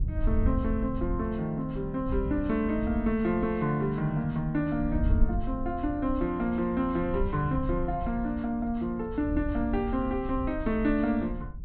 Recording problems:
treble missing; nothing above 4.2 kHz
wind on the microphone; below 78 Hz, SNR 7 dB

